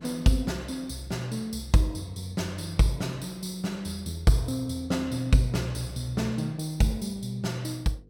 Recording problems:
hum; 50 Hz, harmonics up to 500 Hz, SNR 26 dB

